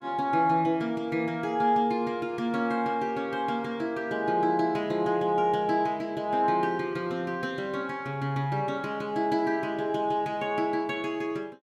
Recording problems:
none

